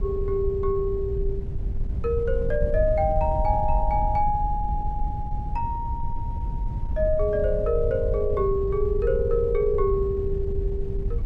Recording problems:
wind on the microphone; below 78 Hz, SNR 4 dB

